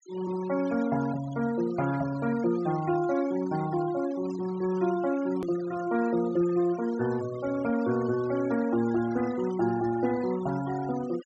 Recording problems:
treble cut off; nothing above 8 kHz
noise reduction artefacts; signal-to-artefact ratio 16 dB
hard cut with a click; at 5.5 s

